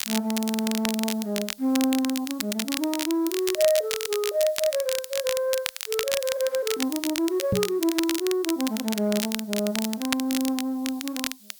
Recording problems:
background hiss; SNR 22 dB
crackle; vinyl, SNR 5 dB
microphone thump; at 7.5 s; peak +4 dB vs average level

